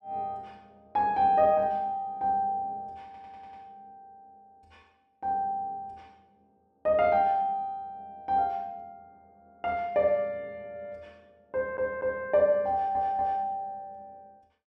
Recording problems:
stutter; at 3 s, at 12 s and at 13 s

